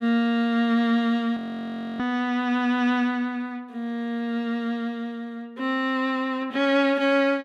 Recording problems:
audio freezing; at 1.5 s for 0.5 s

